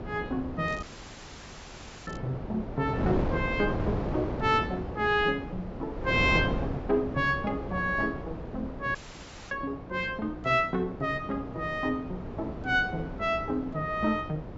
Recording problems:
low-pass filter; nothing above 8 kHz
hum; 60 Hz, harmonics up to 780 Hz, SNR 19 dB
wind on the microphone; below 510 Hz, SNR 6 dB
crackling; from 0.5 to 2 s; loose cable, SNR 27 dB
dropout; at 1 s for 1 s and at 9 s for 0.5 s

